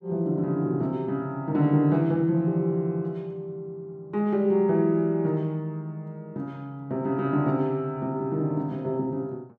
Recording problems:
none

